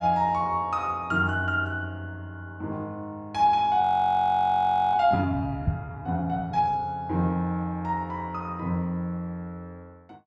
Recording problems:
audio freezing; at 4 s for 1 s
knock on the microphone; at 5.5 s; peak +4 dB vs average level

